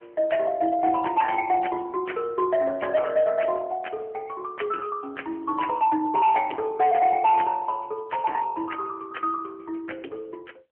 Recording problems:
phone line; 220 Hz to 3.1 kHz, AMR-NB
distorted audio; hard clipping, signal-to-distortion ratio 12 dB

